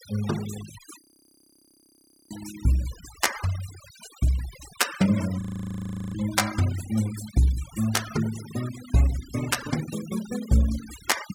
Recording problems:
noise reduction artefacts; signal-to-artefact ratio 14 dB
frozen audio; at 1 s for 1.5 s and at 5.5 s for 0.5 s

